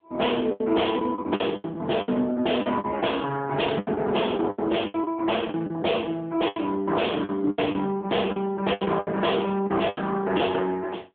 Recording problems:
phone line; 150 Hz to 3.6 kHz, AMR-NB
distortion; hard clipping, signal-to-distortion ratio 12 dB
lost packets; 13% of the sound replaced, filled with the last packet

